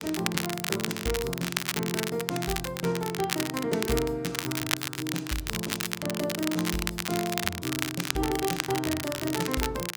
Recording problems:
crackling; vinyl, SNR 1 dB

